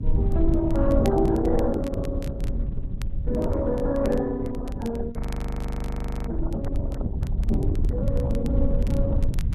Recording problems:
lossy codec; MP3, then Opus, log-spectral distance 2 dB, nothing above 13.1 kHz
rumble; below 96 Hz, SNR 1 dB
crackling; vinyl, SNR 22 dB
microphone handling noise; from 4.5 to 8 s; peak -9 dB vs average level
frozen audio; at 5 s for 1 s

